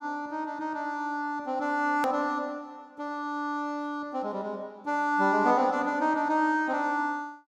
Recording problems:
hard cut with a click; at 2 s

